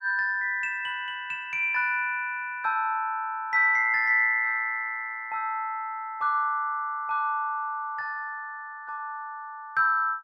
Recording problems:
none

